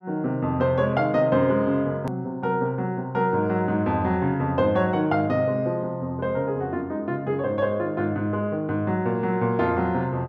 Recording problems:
hard cut with a click; at 2 s

